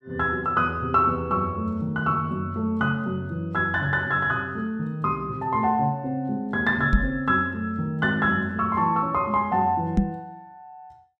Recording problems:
microphone bump; at 7 s and at 10 s; peak +7 dB vs average level

